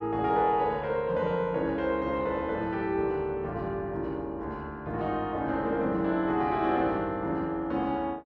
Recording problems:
none

